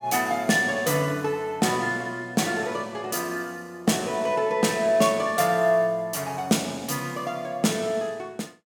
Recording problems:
none

